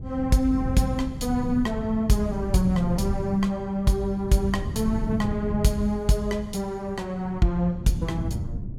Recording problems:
wind noise; below 170 Hz, SNR 7 dB

